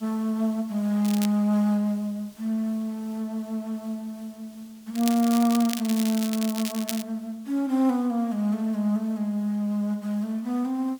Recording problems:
hiss; SNR 28 dB
crackling; at 1 s and from 5 to 7 s; loose cable, SNR 9 dB

